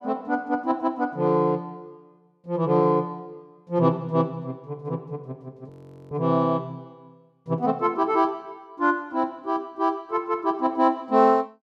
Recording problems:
audio freezing; at 5.5 s

